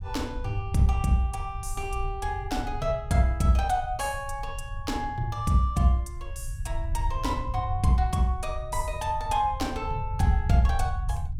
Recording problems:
rumble; below 82 Hz, SNR 8 dB

